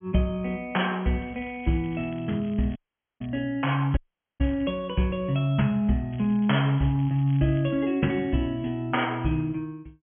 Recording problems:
treble missing; nothing above 3.3 kHz
crackle; from 1 to 3.5 s, at 4 s and from 6 to 7.5 s; loose cable, SNR 27 dB
audio cutting out; at 3 s and at 4 s

